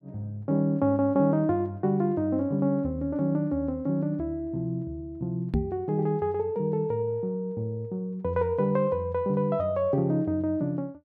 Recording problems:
microphone thump; at 5.5 s; peak +5 dB vs average level

